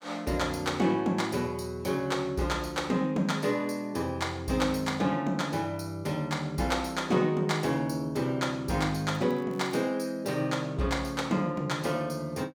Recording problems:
crackle; at 9 s; loose cable, SNR 29 dB

